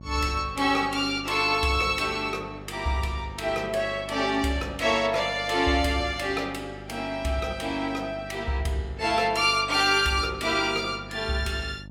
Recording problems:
hum; 50 Hz, harmonics up to 900 Hz, SNR 18 dB

